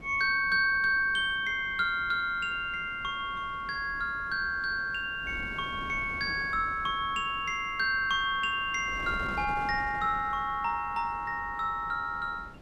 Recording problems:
wind noise; below 500 Hz, SNR 18 dB

